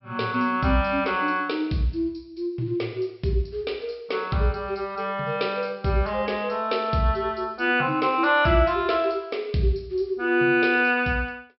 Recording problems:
low-pass filter; nothing above 5.5 kHz

